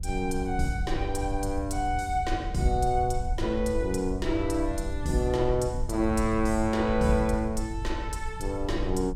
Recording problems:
low-frequency rumble; below 76 Hz, SNR 7 dB

